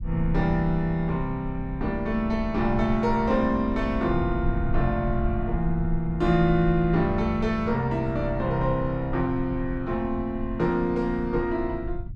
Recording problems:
rumble; below 74 Hz, SNR 9 dB

